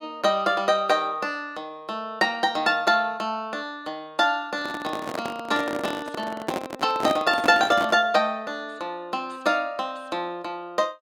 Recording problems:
microphone handling noise; from 4.5 to 8 s; peak +3 dB vs average level

